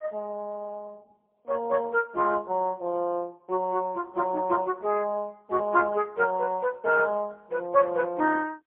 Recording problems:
phone line; 240 Hz to 2.8 kHz, AMR-NB, then MP3

